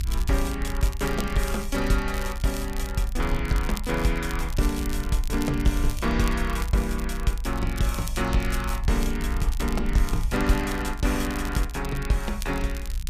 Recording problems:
low-frequency rumble; below 56 Hz, strongest tone 30 Hz, SNR 4 dB
crackle; vinyl, SNR 14 dB

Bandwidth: 15 kHz